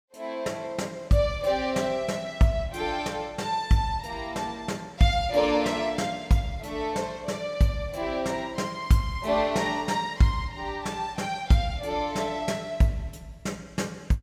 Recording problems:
none

